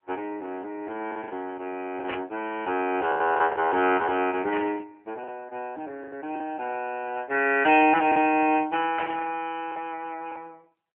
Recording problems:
phone line; 240 Hz to 3 kHz, AMR-NB
packet loss; 6% of the sound replaced, filled with the last packet
static burst; at 2 s, at 4.5 s and at 9 s; peak -3 dB vs average level

